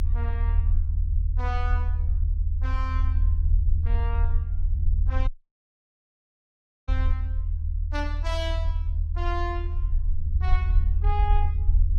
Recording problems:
low-frequency rumble; below 78 Hz, SNR -9 dB
dropout; at 5.5 s for 1.5 s

